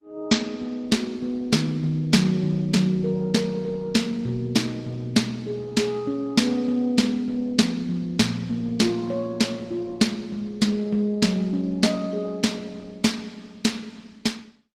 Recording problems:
lossy compression; Opus, log-spectral distance 3 dB

